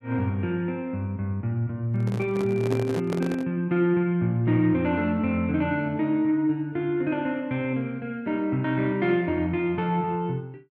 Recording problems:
handling noise; from 2 to 3.5 s; peak -2 dB vs average level

